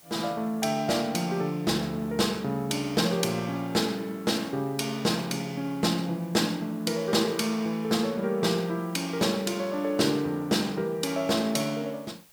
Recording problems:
background hiss; slope -1 dB per octave, SNR 25 dB

